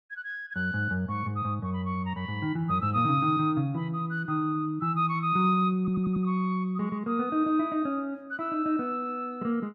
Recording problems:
audio stuttering; at 6 s

